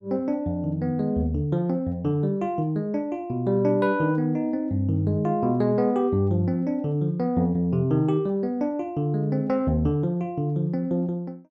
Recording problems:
none

